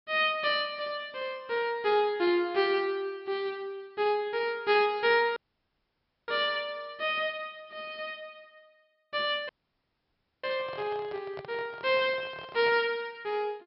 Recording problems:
treble cut off; nothing above 5.5 kHz
dropout; at 5.5 s for 1 s and at 9.5 s for 1 s
microphone handling noise; from 9.5 to 13 s; peak -9 dB vs average level

